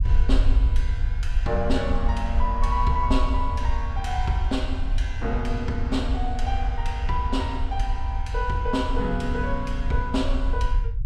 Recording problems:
low-frequency rumble; below 62 Hz, SNR -1 dB

